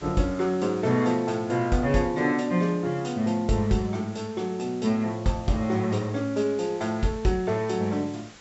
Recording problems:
treble missing; nothing above 7.7 kHz
hiss; slope -2 dB per octave, SNR 22 dB

